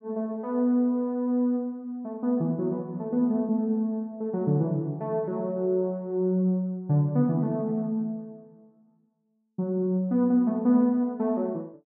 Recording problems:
none

